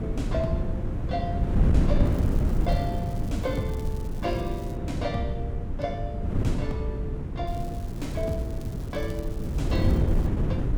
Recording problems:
wind on the microphone; below 170 Hz, SNR -5 dB
crackling; from 2 to 5 s and from 7.5 to 10 s; loose cable, SNR 18 dB

